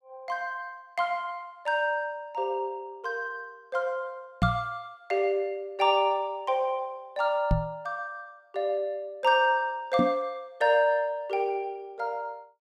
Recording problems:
knock on the microphone; at 4.5 s, at 7.5 s and at 10 s; peak +7 dB vs average level

